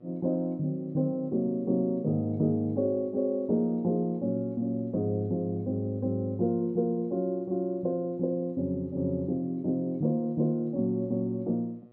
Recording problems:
electrical hum; 60 Hz, harmonics up to 1.3 kHz, SNR 28 dB

